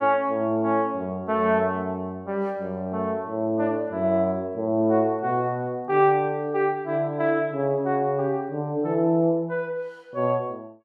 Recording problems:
none

